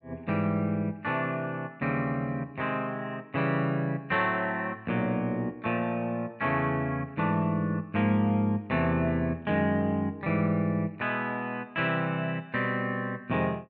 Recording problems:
none

